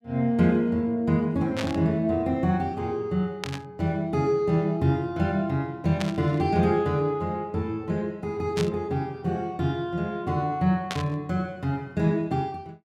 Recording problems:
static burst; 5 times, first at 1.5 s; peak -1 dB vs average level

